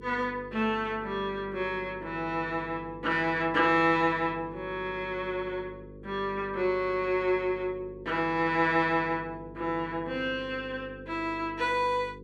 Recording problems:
hum; 50 Hz, harmonics up to 500 Hz, SNR 17 dB

